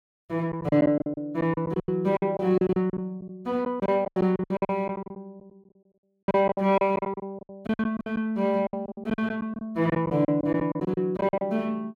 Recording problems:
lost packets; 18% of the sound replaced, filled with silence

